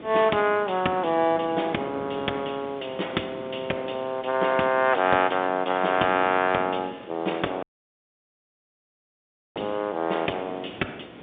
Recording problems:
phone line; 240 Hz to 3.6 kHz, G.711
background hiss; SNR 25 dB
wind noise; below 600 Hz, SNR 19 dB
dropout; at 7.5 s for 2 s

